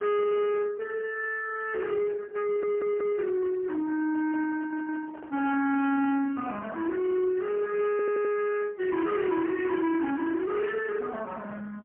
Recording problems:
telephone audio; 220 Hz to 3 kHz, AMR-NB, then MP3
distortion; soft clipping, signal-to-distortion ratio 10 dB
audio stuttering; at 2.5 s, at 4.5 s and at 8 s
microphone handling noise; from 4 to 6 s; peak -13 dB vs average level

